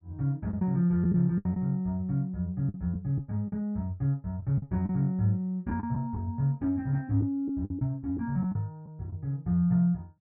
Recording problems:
packet loss; 6% of the sound replaced, filled with the last packet

